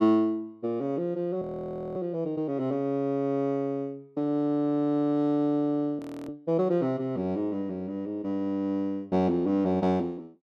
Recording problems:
frozen audio; at 1.5 s for 0.5 s and at 6 s

